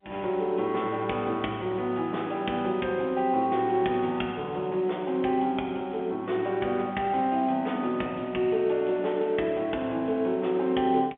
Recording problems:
phone line; 220 Hz to 3.5 kHz, G.711

